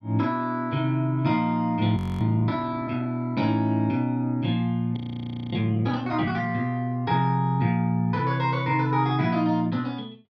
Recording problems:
audio freezing; at 2 s and at 5 s for 0.5 s

